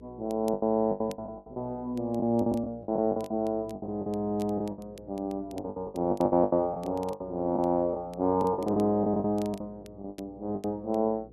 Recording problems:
hum; 60 Hz, harmonics up to 480 Hz, SNR 23 dB
crackling; vinyl, SNR 27 dB
packet loss; 16% of the sound replaced, filled with the last packet

